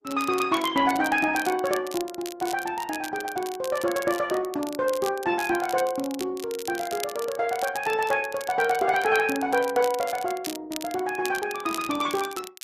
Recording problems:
lossy compression; Opus, log-spectral distance 2 dB, nothing above 11.6 kHz
crackling; vinyl, SNR 13 dB

